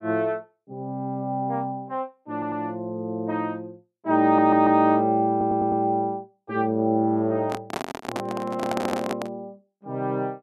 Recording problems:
audio stuttering; 4 times, first at 2.5 s
handling noise; from 7.5 to 9.5 s; peak -1 dB vs average level

